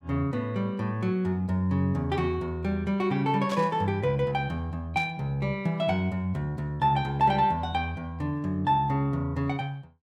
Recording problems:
static burst; at 3.5 s and at 5 s; peak -9 dB vs average level

